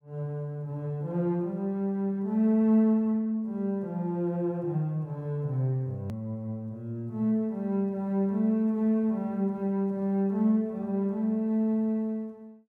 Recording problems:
hard cut with a click; at 6 s

